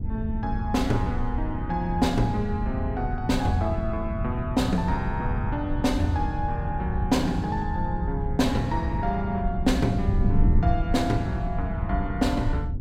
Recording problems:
wind on the microphone; below 110 Hz, SNR 2 dB

